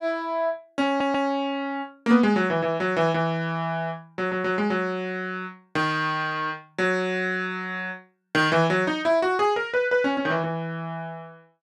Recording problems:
audio stuttering; at 1 s

